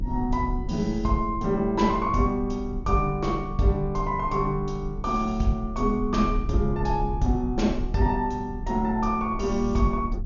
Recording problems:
treble missing; nothing above 7 kHz
hum; 60 Hz, harmonics up to 360 Hz, SNR 21 dB
rumble; below 64 Hz, strongest tone 36 Hz, SNR 9 dB

